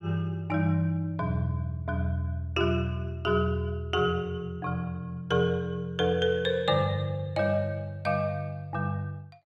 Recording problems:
none

